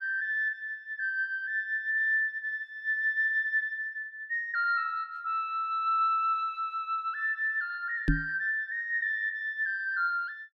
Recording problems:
microphone thump; at 8 s; peak +6 dB vs average level

